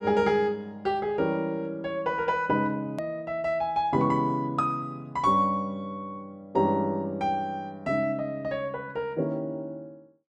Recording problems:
hard cut with a click; at 3 s

